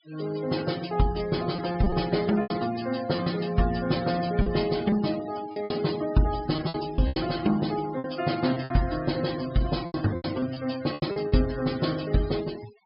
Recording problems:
low-pass filter; nothing above 5.5 kHz
denoising artefacts; signal-to-artefact ratio 15 dB
packet loss; 8% of the sound replaced, filled with repeated pitch periods

